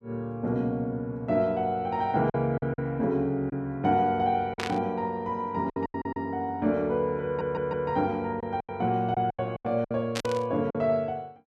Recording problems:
lost packets; 7% of the sound replaced, filled with silence
burst of static; at 4.5 s and at 10 s; peak 0 dB vs average level
audio stuttering; at 6 s and at 7.5 s

